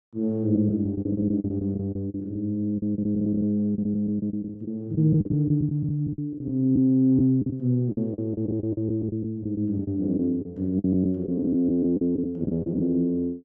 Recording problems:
lost packets; 13% of the sound replaced, filled with the last packet

